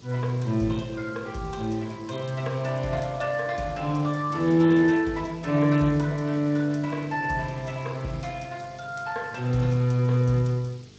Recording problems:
lossy compression; Speex, log-spectral distance 6 dB
hum; 50 Hz, harmonics up to 450 Hz, SNR 25 dB
background hiss; SNR 27 dB

